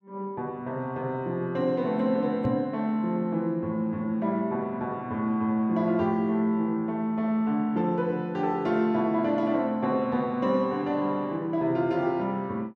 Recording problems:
microphone bump; at 2.5 s; peak 0 dB vs average level

